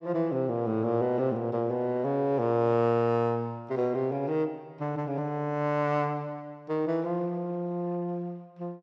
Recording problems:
none

